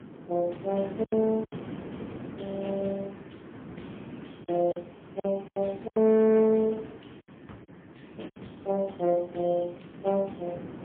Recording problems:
telephone audio; 150 Hz to 3.6 kHz, AMR-NB, then MP3
wind noise; below 450 Hz, SNR 15 dB
packet loss; 7% of the sound replaced, filled with silence

